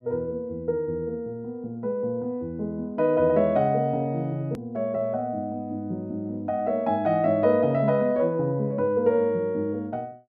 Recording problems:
hard cut with a click; at 4.5 s

